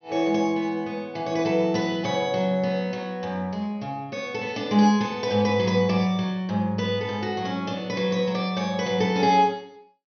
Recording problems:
treble missing; nothing above 6.1 kHz

